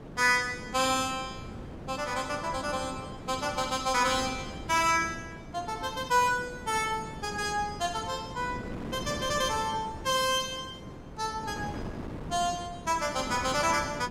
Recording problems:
wind on the microphone; below 470 Hz, SNR 12 dB

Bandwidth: 16 kHz